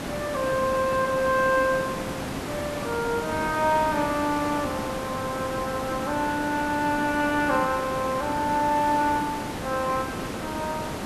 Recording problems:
background hiss; slope -6 dB per octave, SNR 6 dB

